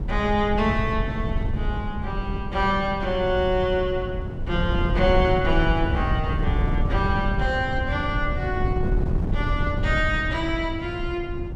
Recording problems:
wind noise; below 130 Hz, SNR 2 dB

